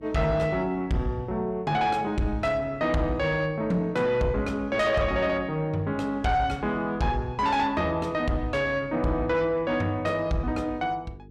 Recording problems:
distortion; soft clipping, signal-to-distortion ratio 11 dB
hum; 50 Hz, harmonics up to 450 Hz, SNR 22 dB

